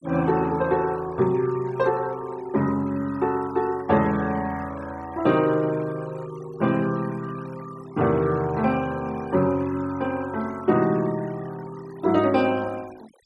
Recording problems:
noise reduction artefacts; signal-to-artefact ratio 21 dB

